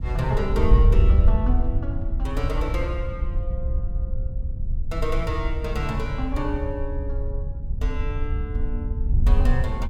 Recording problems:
wind on the microphone; below 68 Hz, SNR -5 dB

